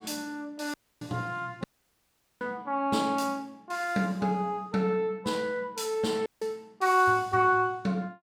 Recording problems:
dropout; at 0.5 s, at 1.5 s for 1 s and at 6.5 s

